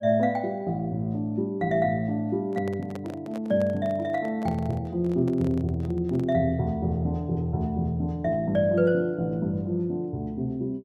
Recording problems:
microphone handling noise; from 2.5 to 6.5 s; peak -8 dB vs average level

